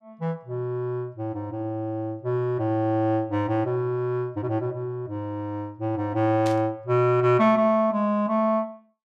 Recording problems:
static burst; at 6.5 s; peak -8 dB vs average level

